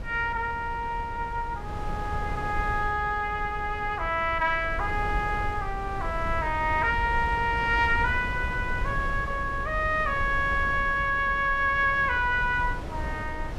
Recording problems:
wind on the microphone; below 140 Hz, SNR 9 dB

